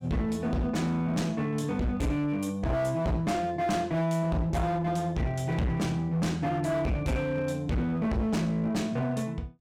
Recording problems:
distorted audio; hard clipping, uneven, signal-to-distortion ratio 7 dB

